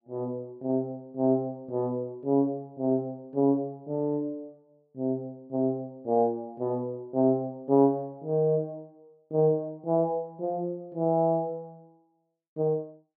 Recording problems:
none

